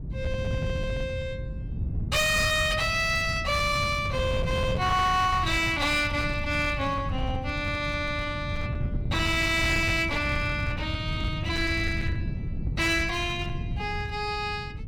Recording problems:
distortion; hard clipping, uneven, signal-to-distortion ratio 11 dB
wind on the microphone; below 150 Hz, SNR 6 dB

